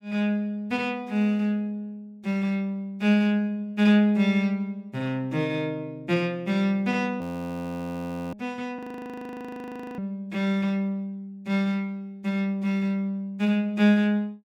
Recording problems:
audio freezing; at 7 s for 1 s and at 9 s for 1 s

